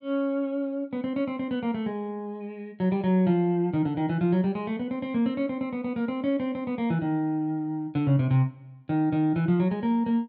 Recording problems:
none

